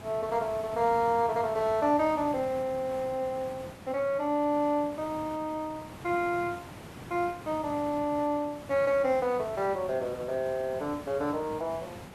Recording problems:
background hiss; slope -6 dB per octave, SNR 15 dB

